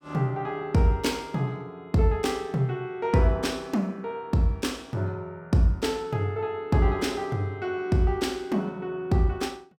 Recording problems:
none

